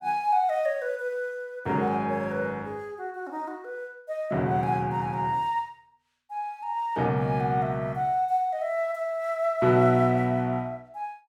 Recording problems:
none

